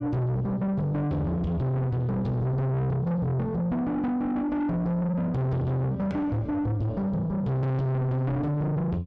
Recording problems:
distortion; soft clipping, signal-to-distortion ratio 6 dB

